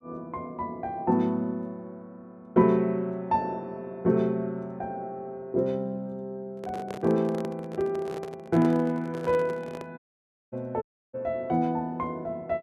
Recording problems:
handling noise; from 6.5 to 10 s; peak -5 dB vs average level
dropout; at 10 s for 0.5 s and at 11 s

